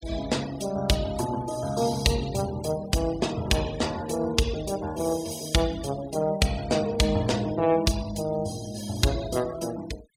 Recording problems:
denoising artefacts; signal-to-artefact ratio 17 dB

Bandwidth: 16 kHz